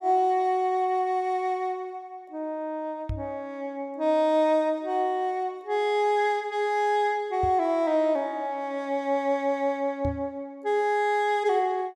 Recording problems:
knock on the microphone; at 3 s, at 7.5 s and at 10 s; peak -2 dB vs average level

